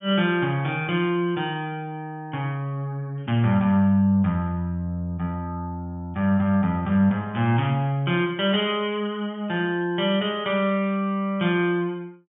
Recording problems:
low-pass filter; nothing above 3.4 kHz

